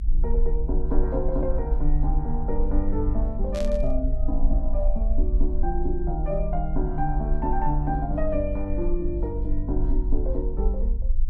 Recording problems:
rumble; below 52 Hz, strongest tone 20 Hz, SNR -1 dB
static burst; at 3.5 s; peak -7 dB vs average level

